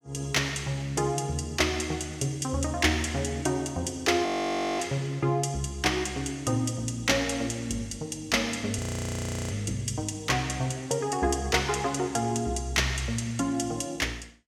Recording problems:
audio freezing; at 4.5 s for 0.5 s and at 9 s for 0.5 s

